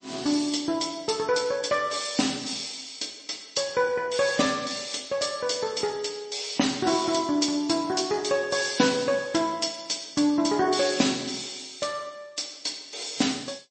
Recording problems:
lossy compression; MP3, log-spectral distance 9 dB, nothing above 8.2 kHz

